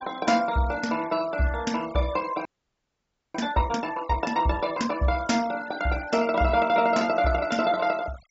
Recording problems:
treble cut off; nothing above 8 kHz
denoising artefacts; signal-to-artefact ratio 18 dB
frozen audio; at 2.5 s for 1 s

